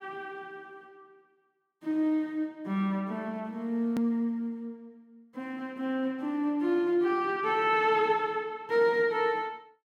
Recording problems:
click at an edit; at 4 s

